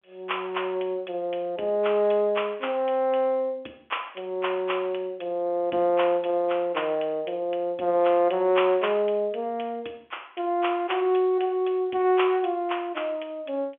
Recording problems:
phone line; 280 Hz to 3.3 kHz, G.711

